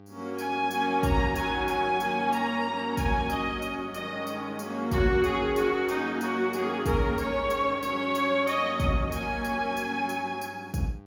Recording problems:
mains hum; 50 Hz, harmonics up to 1.6 kHz, SNR 21 dB

